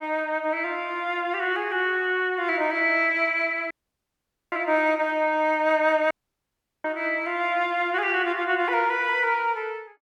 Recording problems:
audio cutting out; at 3.5 s for 1 s and at 6 s for 0.5 s

